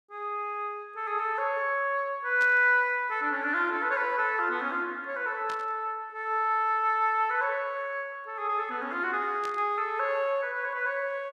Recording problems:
burst of static; at 2.5 s, at 5.5 s and at 9.5 s; peak -10 dB vs average level

